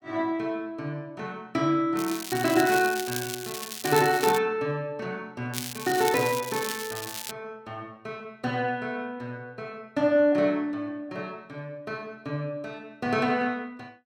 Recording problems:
crackling; from 2 to 4.5 s and from 5.5 to 7.5 s; loose cable, SNR 7 dB

